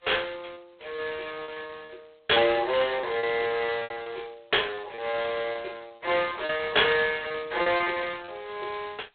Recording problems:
phone line; 370 Hz to 3.6 kHz, G.726
lost packets; 12% of the sound replaced, filled with repeated pitch periods

